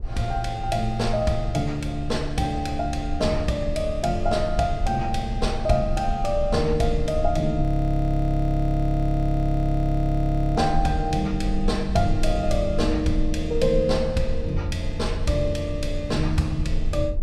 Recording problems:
rumble; below 46 Hz, SNR 7 dB
frozen audio; at 7.5 s for 3 s

